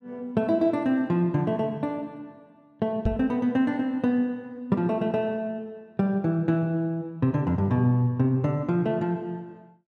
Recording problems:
microphone bump; at 3 s; peak +1 dB vs average level

